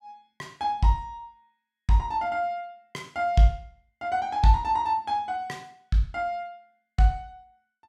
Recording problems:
none

